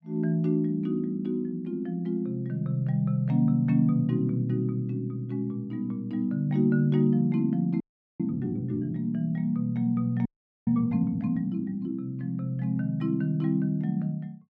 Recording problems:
frozen audio; at 8 s and at 10 s

